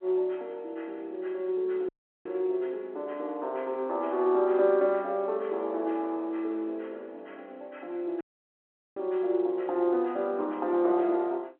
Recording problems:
telephone audio; 280 Hz to 3.5 kHz, G.711
audio cutting out; at 2 s and at 8 s for 1 s

